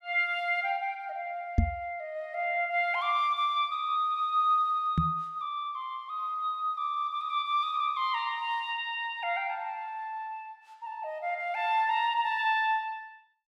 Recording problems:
microphone thump; at 1.5 s and at 5 s; peak +8 dB vs average level

